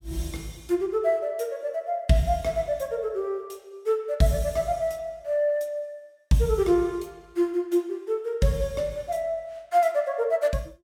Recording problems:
none

